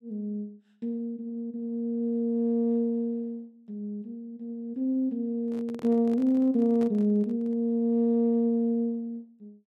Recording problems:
handling noise; from 5.5 to 7.5 s; peak -10 dB vs average level

